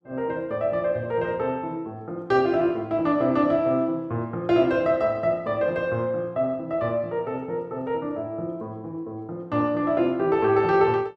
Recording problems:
none

